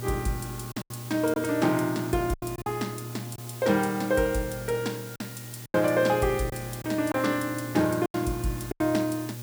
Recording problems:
hum; 60 Hz, harmonics up to 840 Hz, SNR 12 dB
background hiss; slope +2 dB per octave, SNR 15 dB
packet loss; 7% of the sound replaced, filled with silence

